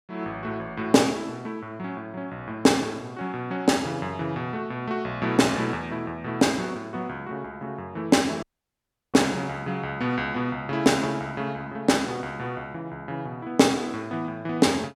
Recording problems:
dropout; at 8.5 s for 0.5 s

